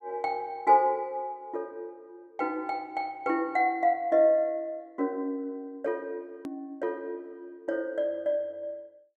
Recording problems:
hard cut with a click; at 6.5 s

